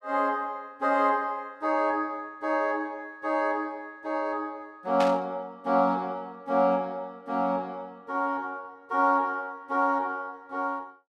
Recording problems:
static burst; at 5 s; peak -2 dB vs average level

